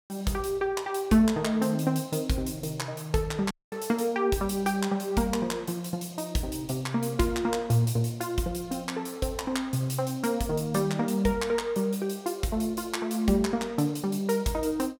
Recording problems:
audio cutting out; at 3.5 s

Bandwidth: 17 kHz